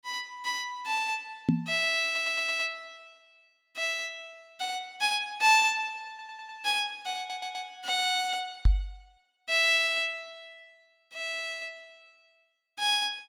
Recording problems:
microphone thump; at 1.5 s and at 8.5 s; peak +8 dB vs average level
stutter; at 2 s, at 6 s and at 7 s

